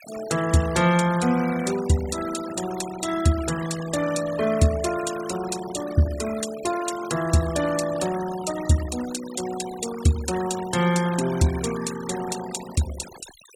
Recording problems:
denoising artefacts; signal-to-artefact ratio 13 dB

